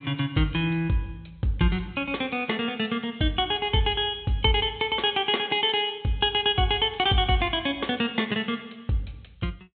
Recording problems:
treble missing; nothing above 4 kHz

